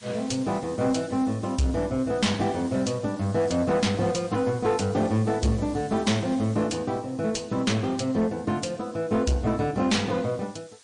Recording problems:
codec artefacts; MP3, log-spectral distance 3 dB, nothing above 9.2 kHz
distortion; soft clipping, signal-to-distortion ratio 10 dB
hiss; slope +2 dB per octave, SNR 23 dB

